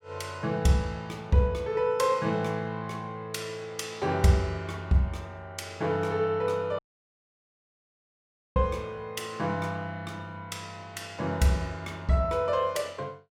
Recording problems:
audio cutting out; at 7 s for 2 s

